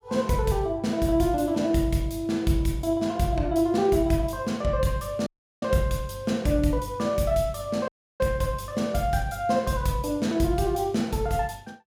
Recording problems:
dropout; at 5.5 s and at 8 s

